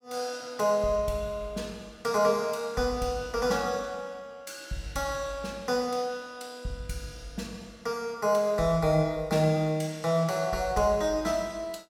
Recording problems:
none

